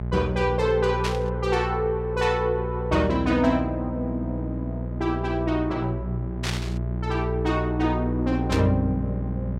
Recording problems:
hum; 60 Hz, harmonics up to 840 Hz, SNR 5 dB
burst of static; at 1 s, at 6.5 s and at 8.5 s; peak 0 dB vs average level

